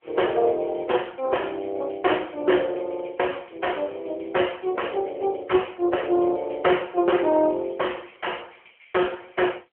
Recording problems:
telephone audio; 300 Hz to 3.2 kHz, AMR-NB

